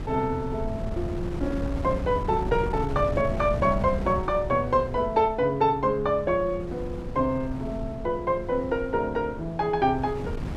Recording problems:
wind noise; below 200 Hz, SNR 9 dB

